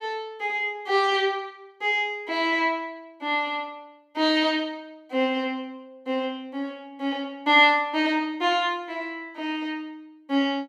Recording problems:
none

